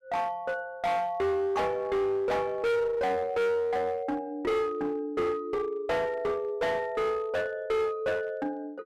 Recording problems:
distortion; hard clipping, uneven, signal-to-distortion ratio 7 dB

